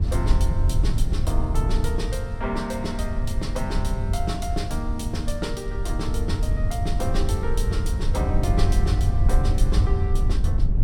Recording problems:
rumble; below 88 Hz, SNR -5 dB

